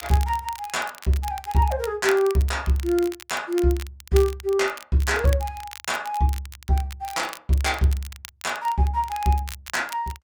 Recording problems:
crackle; vinyl, SNR 16 dB

